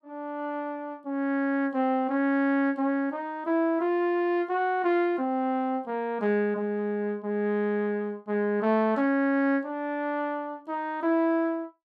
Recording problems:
none

